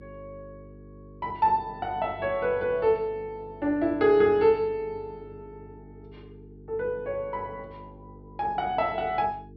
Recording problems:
treble cut off; nothing above 5.5 kHz
electrical hum; 50 Hz, harmonics up to 450 Hz, SNR 21 dB

